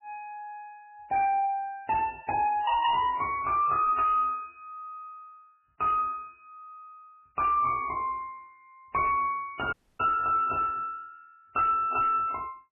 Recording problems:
lossy compression; AAC, then MP3, log-spectral distance 2 dB, nothing above 2.8 kHz
distortion; soft clipping, signal-to-distortion ratio 10 dB
dropout; at 9.5 s

